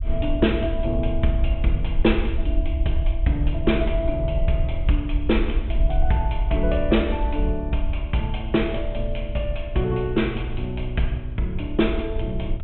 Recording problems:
treble cut off; nothing above 3.6 kHz
rumble; below 62 Hz, SNR 3 dB

